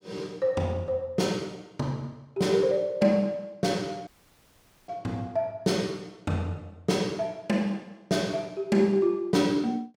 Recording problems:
audio cutting out; at 4 s for 1 s

